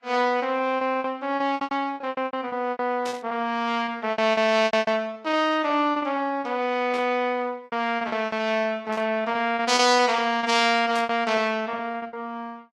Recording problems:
lossy codec; Vorbis, log-spectral distance 2 dB, nothing above 12.7 kHz
packet loss; 17% of the sound replaced, filled with repeated pitch periods
static burst; 4 times, first at 3 s; peak -8 dB vs average level

